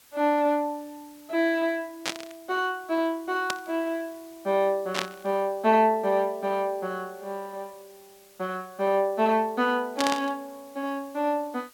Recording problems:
hiss; slope 0 dB per octave, SNR 26 dB
burst of static; 4 times, first at 2 s; peak +3 dB vs average level

